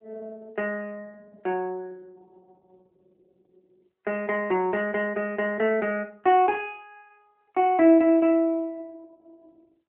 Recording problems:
telephone audio; 240 Hz to 3.1 kHz, AMR-NB

